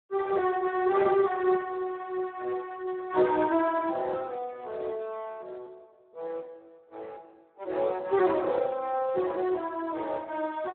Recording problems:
phone line; 280 Hz to 2.8 kHz, Speex

